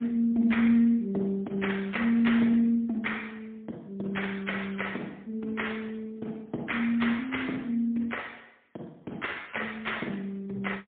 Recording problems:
telephone audio; 190 Hz to 3.6 kHz, AMR-NB, then MP3

